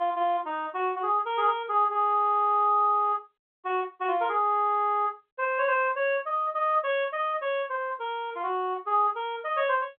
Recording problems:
telephone audio; 300 Hz to 3.6 kHz, G.711

